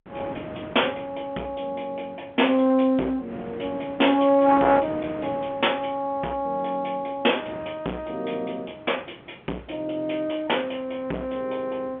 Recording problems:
phone line; 220 Hz to 3.4 kHz, G.711
distorted audio; hard clipping, uneven, signal-to-distortion ratio 11 dB
wind on the microphone; below 1 kHz, SNR 17 dB

